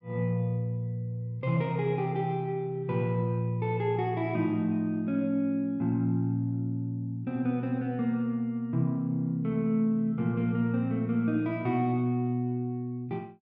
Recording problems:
none

